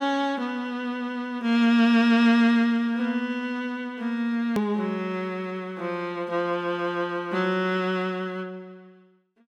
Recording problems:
click at an edit; at 4.5 s

